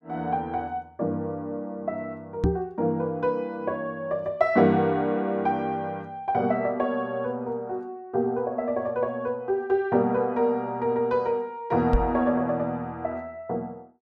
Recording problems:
microphone thump; at 2.5 s and at 12 s; peak +6 dB vs average level

